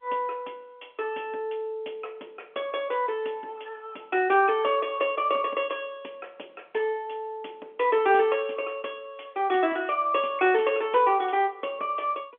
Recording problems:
phone line; 280 Hz to 3.4 kHz, G.711

